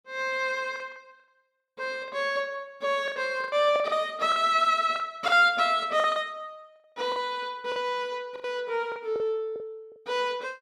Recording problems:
lost packets; 9% of the sound replaced, filled with the last packet

